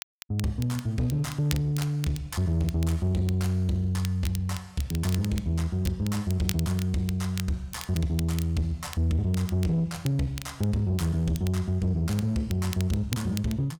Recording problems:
distortion; soft clipping, signal-to-distortion ratio 11 dB
crackle; vinyl, SNR 15 dB

